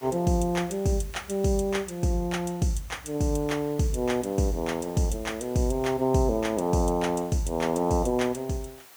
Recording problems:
hiss; SNR 22 dB

